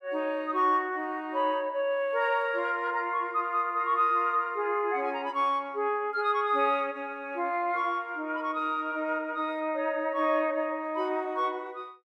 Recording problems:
none

